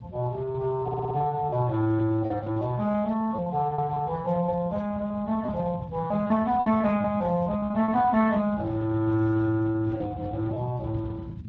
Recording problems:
lossy compression; Speex, log-spectral distance 3 dB
rumble; below 190 Hz, SNR 14 dB
packet loss; 7% of the sound replaced, filled with repeated pitch periods
stutter; at 1 s

